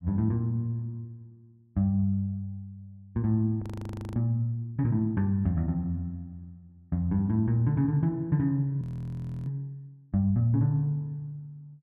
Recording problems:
frozen audio; at 3.5 s for 0.5 s and at 9 s for 0.5 s

